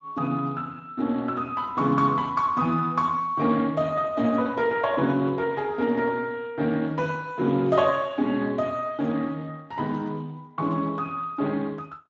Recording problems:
lossy compression; Speex, log-spectral distance 3 dB, nothing above 7.3 kHz

